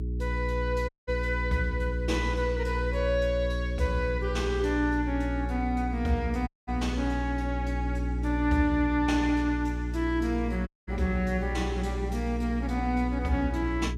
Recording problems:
mains hum; 60 Hz, harmonics up to 420 Hz, SNR 3 dB
audio cutting out; at 1 s, at 6.5 s and at 11 s

